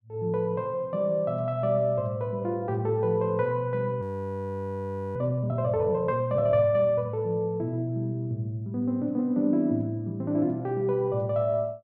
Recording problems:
frozen audio; at 4 s for 1 s

